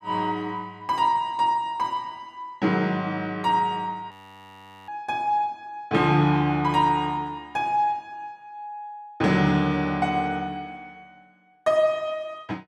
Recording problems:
frozen audio; at 4 s for 1 s

